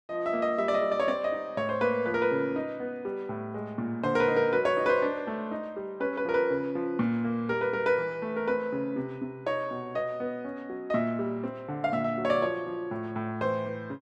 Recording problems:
none

